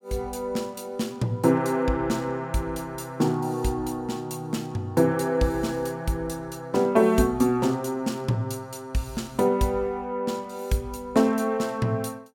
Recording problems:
none

